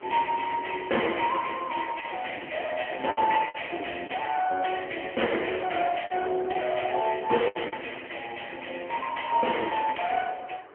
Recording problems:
phone line; 280 Hz to 3.2 kHz, AMR-NB
wind noise; below 1.4 kHz, SNR 22 dB
lost packets; 4% of the sound replaced, filled with the last packet

